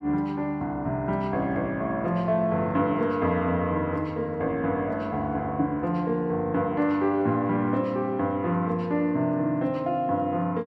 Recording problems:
none

